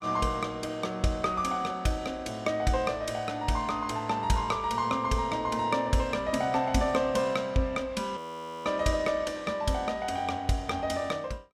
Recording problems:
audio freezing; at 8 s

